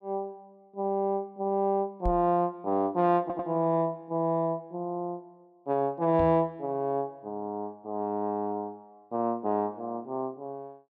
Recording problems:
knock on the microphone; at 2 s and at 6 s; peak 0 dB vs average level
audio stuttering; at 3 s

